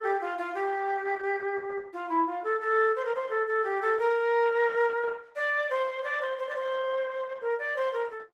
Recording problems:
codec artefacts; Opus, log-spectral distance 3 dB, nothing above 18.9 kHz

